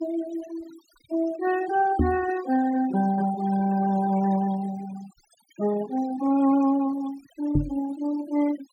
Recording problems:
denoising artefacts; signal-to-artefact ratio 16 dB
microphone bump; at 2 s and at 7.5 s; peak +7 dB vs average level

